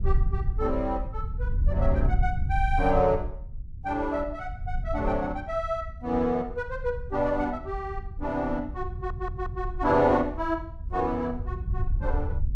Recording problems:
rumble; below 76 Hz, SNR 5 dB
stutter; at 9 s

